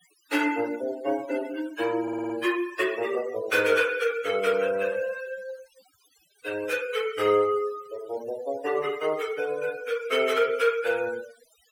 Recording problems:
denoising artefacts; signal-to-artefact ratio 15 dB
stutter; at 2 s

